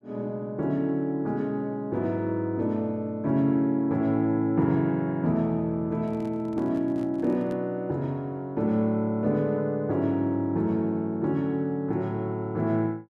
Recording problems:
microphone handling noise; from 6 to 7.5 s; peak -10 dB vs average level

